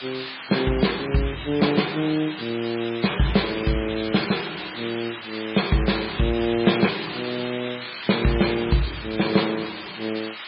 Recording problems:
low-pass filter; nothing above 4.5 kHz
codec artefacts; MP3, log-spectral distance 22 dB
background hiss; SNR 9 dB

